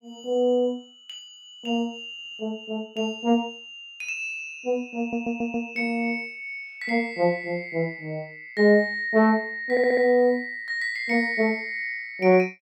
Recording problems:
audio stuttering; at 2 s, at 5 s and at 9.5 s

